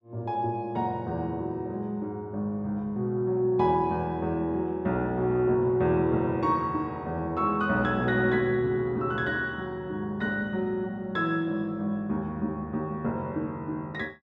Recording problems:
none

